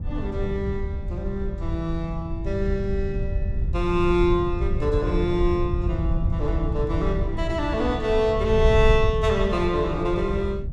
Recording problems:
wind on the microphone; below 96 Hz, SNR 3 dB

